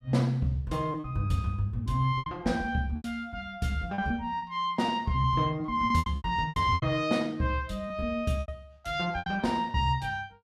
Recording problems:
lost packets; 10% of the sound replaced, filled with repeated pitch periods

